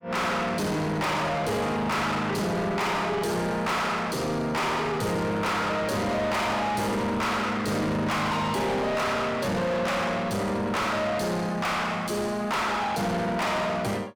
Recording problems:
distorted audio; soft clipping, signal-to-distortion ratio 6 dB

